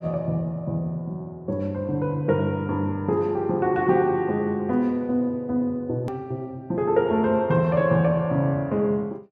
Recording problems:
hard cut with a click; at 6 s

